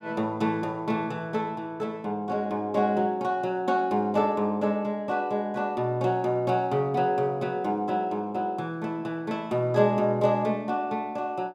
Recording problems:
none

